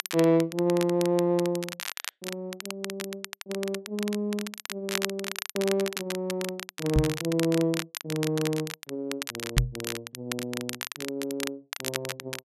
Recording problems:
crackling; vinyl, SNR 6 dB
microphone bump; at 7 s and at 9.5 s; peak +9 dB vs average level

